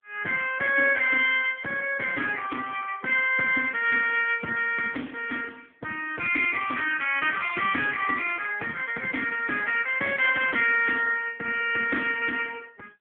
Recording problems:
telephone audio; 220 Hz to 3.3 kHz, AMR-NB

